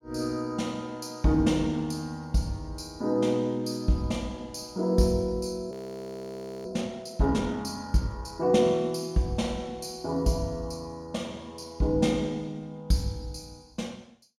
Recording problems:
frozen audio; at 5.5 s for 1 s

